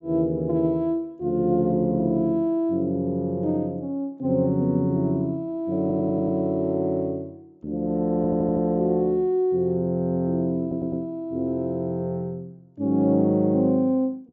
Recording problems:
low-pass filter; nothing above 8 kHz
stutter; at 6 s, at 8 s and at 11 s

